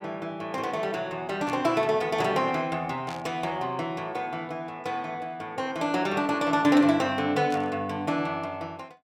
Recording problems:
static burst; at 1.5 s, at 3 s and at 7.5 s; peak -10 dB vs average level

